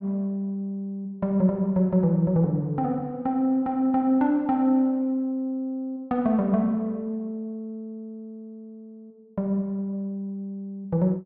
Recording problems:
treble cut off; nothing above 5.2 kHz

